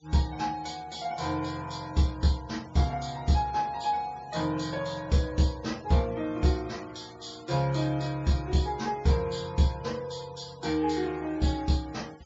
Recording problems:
treble cut off; nothing above 7.4 kHz
noise reduction artefacts; signal-to-artefact ratio 23 dB

